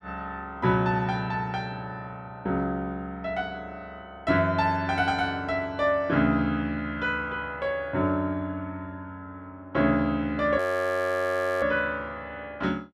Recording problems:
frozen audio; at 11 s for 1 s

